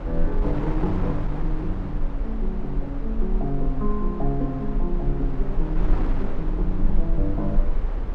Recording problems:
electrical hum; 50 Hz, harmonics up to 600 Hz, SNR 26 dB
rumble; below 34 Hz, strongest tone 20 Hz, SNR 0 dB
wind on the microphone; below 630 Hz, SNR 6 dB

